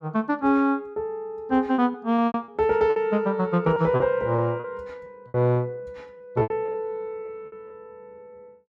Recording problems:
lost packets; 9% of the sound replaced, filled with repeated pitch periods

